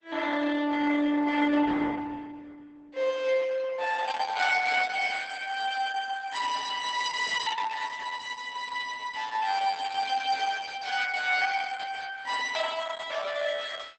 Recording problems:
lossy codec; Opus, log-spectral distance 6 dB, nothing above 8.2 kHz

